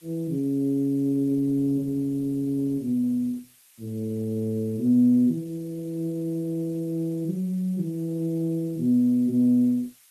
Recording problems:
lossy codec; Opus, log-spectral distance 3 dB, nothing above 13.1 kHz
hiss; slope +3 dB per octave, SNR 29 dB

